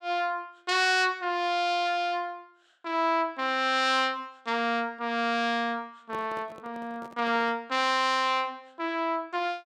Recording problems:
microphone handling noise; from 6 to 7.5 s; peak -11 dB vs average level

